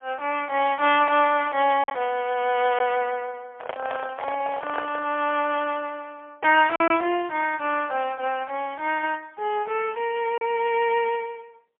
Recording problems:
phone line; 340 Hz to 3.3 kHz, AMR-NB, then MP3
lost packets; 1.3% of the sound replaced, filled with silence
handling noise; from 3.5 to 5 s; peak -3 dB vs average level

